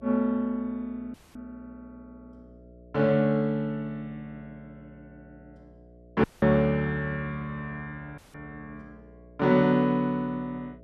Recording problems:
hum; 60 Hz, harmonics up to 660 Hz, SNR 26 dB
audio cutting out; at 1 s, at 6 s and at 8 s

